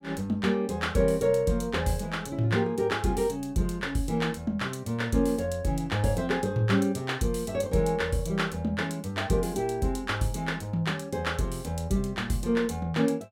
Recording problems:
none

